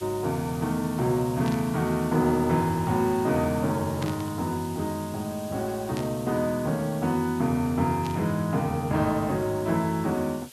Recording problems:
background hiss; SNR 18 dB
burst of static; 4 times, first at 1.5 s; peak -8 dB vs average level

